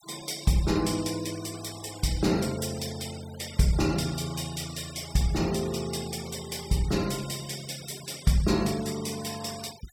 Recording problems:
noise reduction artefacts; signal-to-artefact ratio 14 dB

